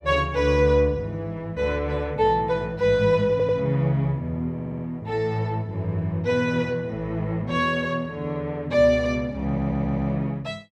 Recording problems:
audio stuttering; at 3.5 s, at 4.5 s and at 9.5 s

